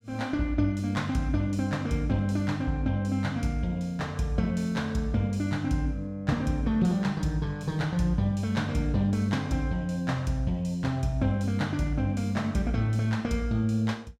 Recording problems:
none

